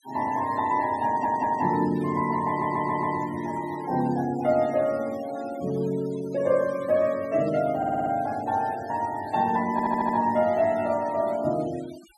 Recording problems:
denoising artefacts; signal-to-artefact ratio 20 dB
stutter; 4 times, first at 1 s

